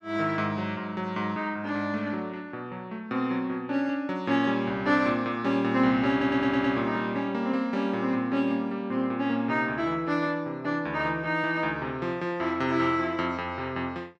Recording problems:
audio stuttering; at 6 s

